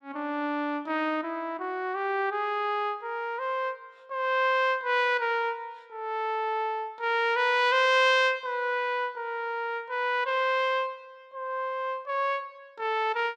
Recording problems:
none

